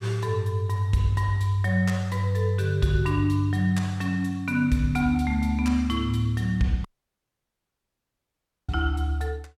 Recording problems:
dropout; at 7 s for 2 s

